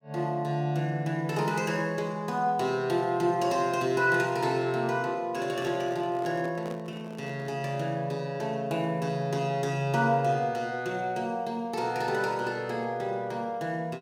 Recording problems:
handling noise; from 5.5 to 7.5 s; peak -7 dB vs average level

